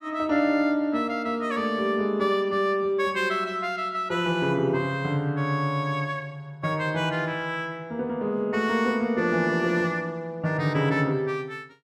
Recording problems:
none

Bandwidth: 14.5 kHz